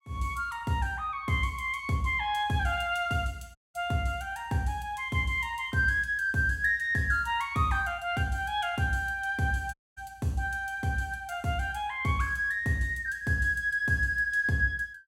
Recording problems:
audio cutting out; at 3.5 s and at 9.5 s

